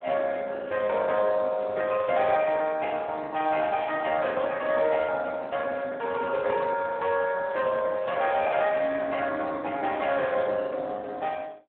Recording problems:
phone line; 240 Hz to 2.8 kHz, Speex
packet loss; 14% of the sound replaced, filled with the last packet

